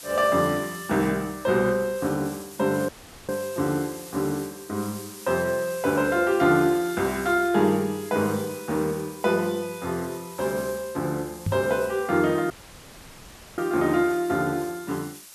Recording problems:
hiss; slope +2 dB per octave, SNR 16 dB
dropout; at 3 s and at 13 s for 1 s
microphone bump; at 11 s; peak +2 dB vs average level

